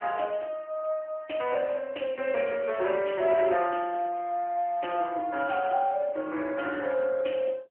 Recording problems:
telephone audio; 280 Hz to 3.1 kHz, AMR-NB

